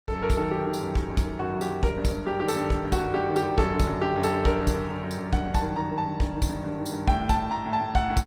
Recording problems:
codec artefacts; Opus, log-spectral distance 3 dB, nothing above 18.5 kHz

